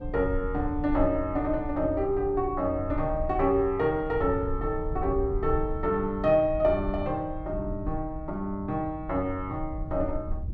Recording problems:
rumble; below 78 Hz, SNR 10 dB

